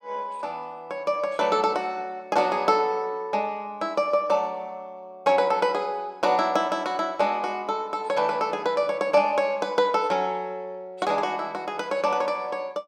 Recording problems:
none

